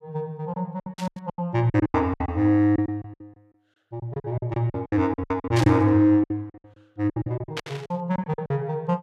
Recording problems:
lost packets; 19% of the sound replaced, filled with silence
static burst; at 1 s, at 5.5 s and at 7.5 s; peak -3 dB vs average level

